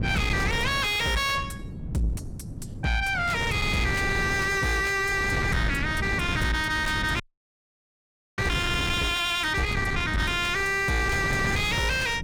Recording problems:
distortion; soft clipping, signal-to-distortion ratio 5 dB
wind noise; below 350 Hz, SNR 6 dB
frozen audio; at 7 s for 1 s

